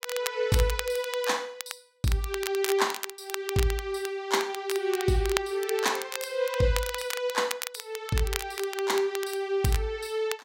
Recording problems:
crackling; vinyl, SNR 8 dB

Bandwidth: 16 kHz